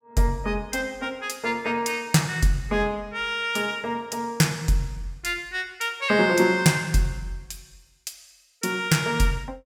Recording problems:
none

